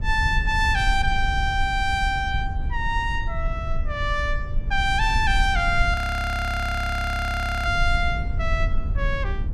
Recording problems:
low-frequency rumble; below 70 Hz, SNR 4 dB
audio freezing; at 6 s for 1.5 s

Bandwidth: 14 kHz